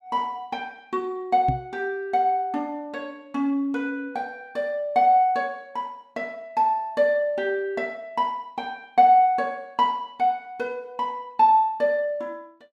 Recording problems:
microphone thump; at 1.5 s; peak +1 dB vs average level

